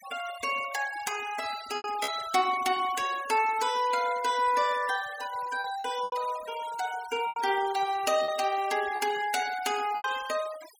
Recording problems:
noise reduction artefacts; signal-to-artefact ratio 15 dB
packet loss; 5% of the sound replaced, filled with repeated pitch periods

